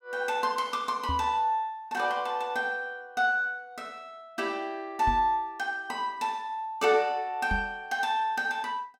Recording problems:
microphone thump; at 1 s, at 5 s and at 7.5 s; peak -1 dB vs average level

